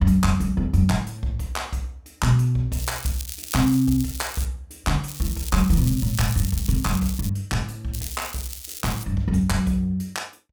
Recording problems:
crackling; from 2.5 to 4.5 s, from 5 to 7.5 s and from 8 to 9 s; loose cable, SNR 10 dB

